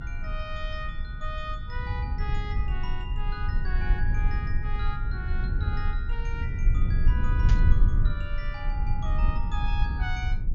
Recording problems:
low-pass filter; nothing above 7.2 kHz
rumble; below 70 Hz, SNR -9 dB
burst of static; at 7.5 s; peak +2 dB vs average level

